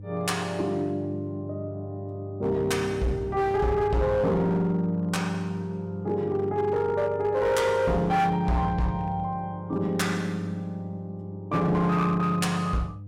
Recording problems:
distortion; hard clipping, uneven, signal-to-distortion ratio 11 dB
hum; 50 Hz, harmonics up to 500 Hz, SNR 14 dB

